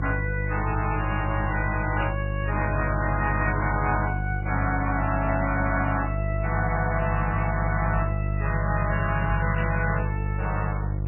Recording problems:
codec artefacts; MP3, log-spectral distance 3 dB, nothing above 2.7 kHz
hum; 50 Hz, harmonics up to 500 Hz, SNR 1 dB
static burst; at 2 s and at 9.5 s; peak -4 dB vs average level

